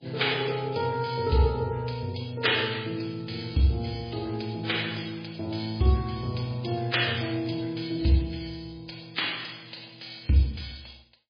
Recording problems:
lossy codec; MP3, log-spectral distance 8 dB

